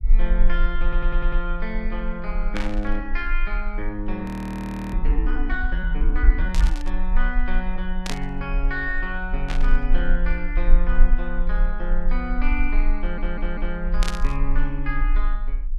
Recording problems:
rumble; below 34 Hz, strongest tone 20 Hz, SNR -4 dB
audio stuttering; at 1 s and at 13 s
static burst; 5 times, first at 2.5 s; peak +4 dB vs average level
frozen audio; at 4.5 s for 0.5 s

